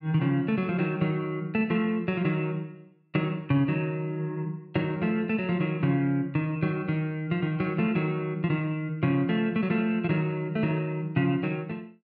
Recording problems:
none

